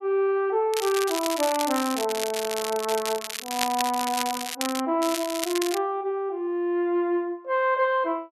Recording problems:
crackle; from 0.5 to 5 s and at 5 s; loose cable, SNR 6 dB

